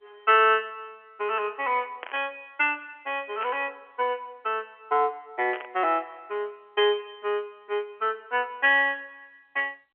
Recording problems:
phone line; 340 Hz to 3.2 kHz, G.711
burst of static; at 2 s, at 3.5 s and at 5.5 s; peak -7 dB vs average level

